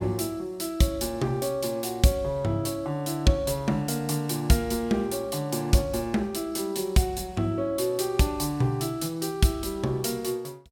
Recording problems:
none

